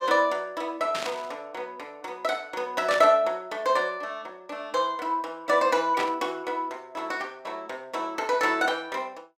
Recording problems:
static burst; at 1 s, at 3 s and at 6 s; peak -1 dB vs average level

